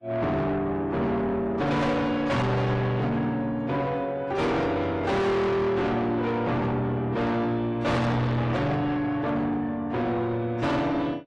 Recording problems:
codec artefacts; AAC, log-spectral distance 2 dB, nothing above 10.7 kHz
distortion; soft clipping, signal-to-distortion ratio 6 dB

